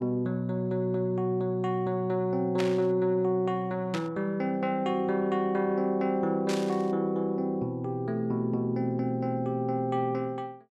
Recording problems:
static burst; at 2.5 s, at 4 s and at 6.5 s; peak -2 dB vs average level

